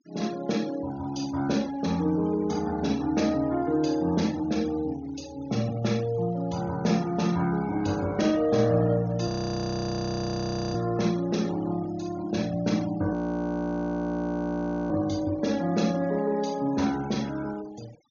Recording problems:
treble missing; nothing above 6.8 kHz
noise reduction artefacts; signal-to-artefact ratio 21 dB
frozen audio; at 9.5 s for 1.5 s and at 13 s for 2 s

